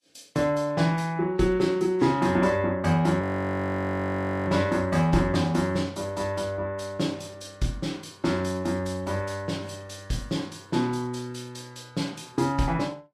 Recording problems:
codec artefacts; Vorbis, log-spectral distance 3 dB, nothing above 13.1 kHz
frozen audio; at 3 s for 1.5 s

